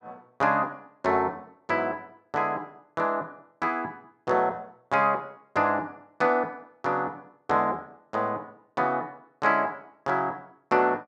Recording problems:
none

